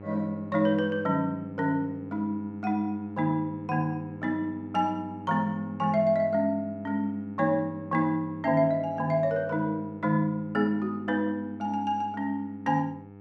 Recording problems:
hum; 50 Hz, harmonics up to 1.4 kHz, SNR 16 dB

